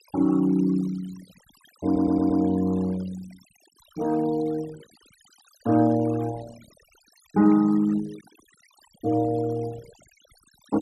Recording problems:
denoising artefacts; signal-to-artefact ratio 21 dB
audio stuttering; at 2 s

